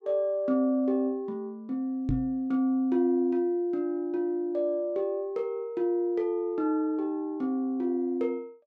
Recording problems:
knock on the microphone; at 2 s; peak +3 dB vs average level

